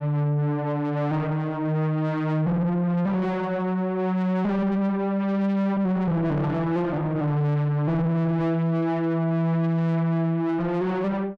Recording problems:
distortion; soft clipping, signal-to-distortion ratio 7 dB

